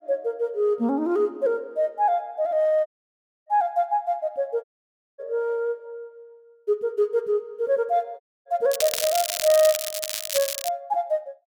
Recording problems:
dropout; at 3 s for 0.5 s, at 4.5 s for 0.5 s and at 8 s
crackle; from 8.5 to 11 s; loose cable, SNR 3 dB

